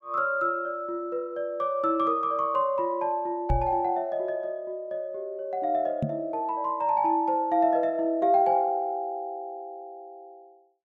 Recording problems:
microphone thump; at 3.5 s and at 6 s; peak +3 dB vs average level

